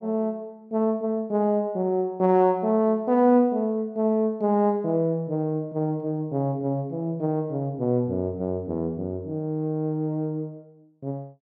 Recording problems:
none

